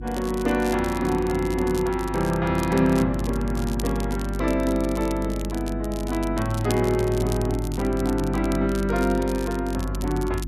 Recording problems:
electrical hum; 50 Hz, harmonics up to 350 Hz, SNR 7 dB
crackle; vinyl, SNR 16 dB

